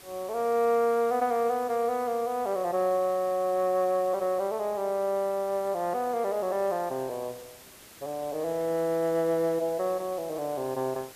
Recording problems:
background hiss; slope -2 dB per octave, SNR 20 dB

